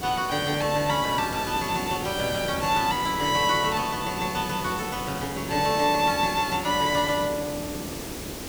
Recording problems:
hiss; SNR 9 dB

